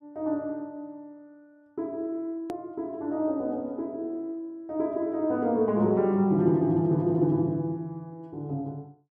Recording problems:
click at an edit; at 2.5 s

